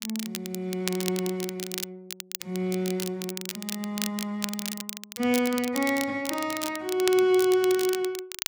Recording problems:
crackling; vinyl, SNR 8 dB

